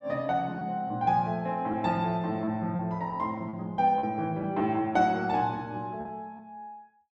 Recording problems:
packet loss; 5% of the sound replaced, filled with repeated pitch periods

